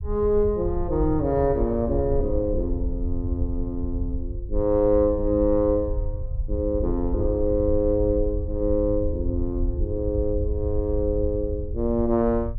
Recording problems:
rumble; below 76 Hz, SNR 6 dB

